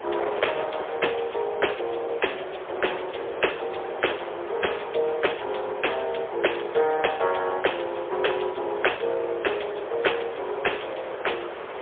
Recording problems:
phone line; 340 Hz to 3.4 kHz, AMR-NB, then MP3
distortion; hard clipping, signal-to-distortion ratio 19 dB
wind noise; below 1.4 kHz, SNR 8 dB

